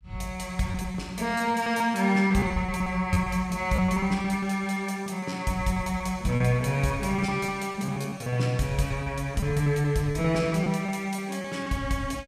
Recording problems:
packet loss; 10% of the sound replaced, filled with repeated pitch periods

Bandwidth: 15 kHz